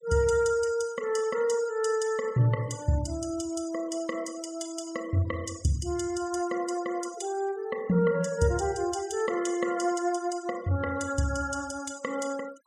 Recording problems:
noise reduction artefacts; signal-to-artefact ratio 18 dB

